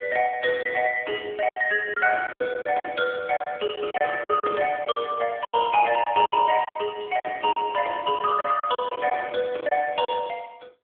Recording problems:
telephone audio; 280 Hz to 2.9 kHz, AMR-NB
packet loss; 10% of the sound replaced, filled with silence

